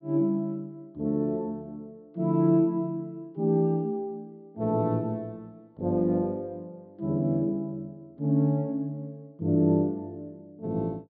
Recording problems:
low-pass filter; nothing above 5.5 kHz

